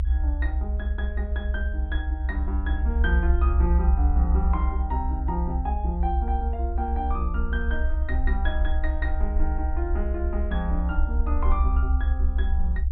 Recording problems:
low-pass filter; nothing above 4 kHz
low-frequency rumble; below 66 Hz, SNR -7 dB

